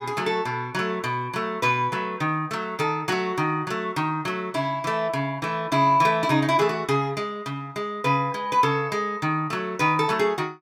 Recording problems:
none

